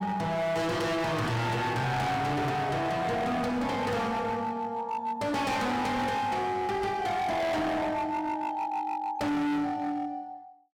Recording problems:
distorted audio; hard clipping, signal-to-distortion ratio 6 dB

